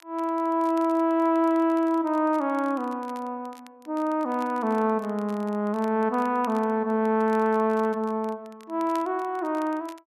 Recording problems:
crackling; vinyl, SNR 27 dB

